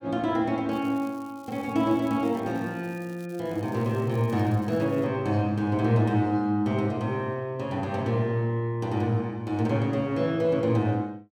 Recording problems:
crackle; from 0.5 to 5 s; loose cable, SNR 27 dB

